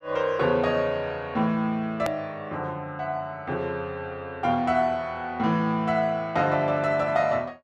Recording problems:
edit click; at 2 s

